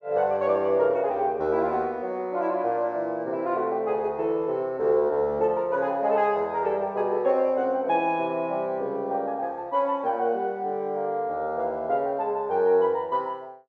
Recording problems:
none

